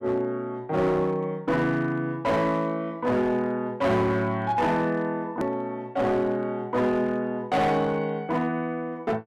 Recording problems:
distorted audio; hard clipping, signal-to-distortion ratio 11 dB
edit click; at 5.5 s

